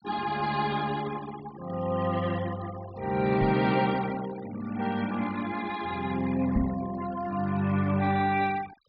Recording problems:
treble missing; nothing above 5.5 kHz
denoising artefacts; signal-to-artefact ratio 16 dB
knock on the microphone; at 3.5 s and at 6.5 s; peak +5 dB vs average level

